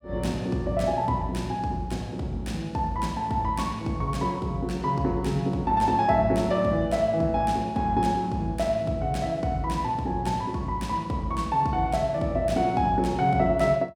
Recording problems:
none

